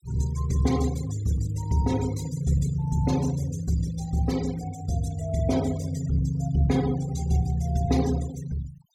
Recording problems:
denoising artefacts; signal-to-artefact ratio 15 dB

